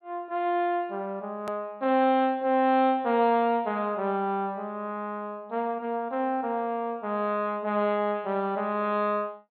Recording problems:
low-pass filter; nothing above 4.3 kHz
click at an edit; at 1.5 s

